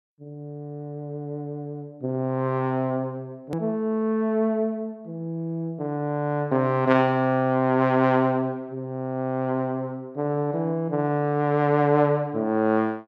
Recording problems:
click at an edit; at 3.5 s

